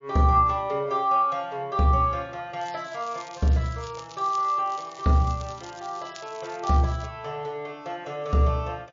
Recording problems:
lossy codec; MP3, log-spectral distance 4 dB
crackle; from 2.5 to 7 s; loose cable, SNR 22 dB

